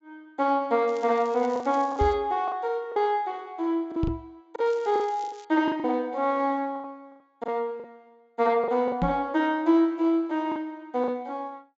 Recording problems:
low-pass filter; nothing above 7.5 kHz
lost packets; 8% of the sound replaced, filled with the last packet
crackling; from 1 to 2 s and at 4.5 s; loose cable, SNR 26 dB
microphone bump; at 2 s, at 4 s and at 9 s; peak +2 dB vs average level

